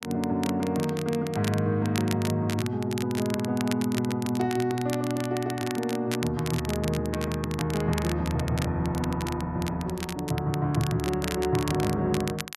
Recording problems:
crackle; vinyl, SNR 11 dB

